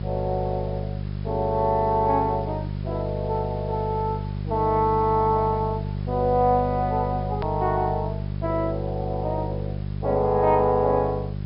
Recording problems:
low-pass filter; nothing above 5.3 kHz
hum; 50 Hz, harmonics up to 600 Hz, SNR 6 dB
hiss; slope -3 dB per octave, SNR 25 dB
hard cut with a click; at 7.5 s

